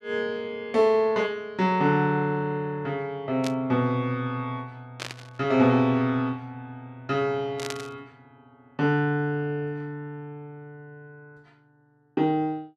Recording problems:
burst of static; at 3.5 s, at 5 s and at 7.5 s; peak -4 dB vs average level

